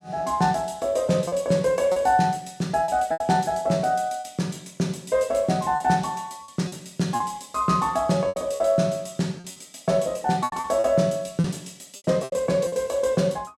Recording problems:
packet loss; 7% of the sound replaced, filled with repeated pitch periods

